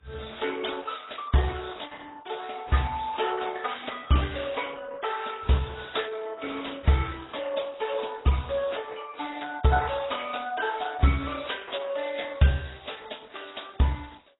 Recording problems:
lossy codec; Opus, then AAC, log-spectral distance 10 dB, nothing above 3.8 kHz

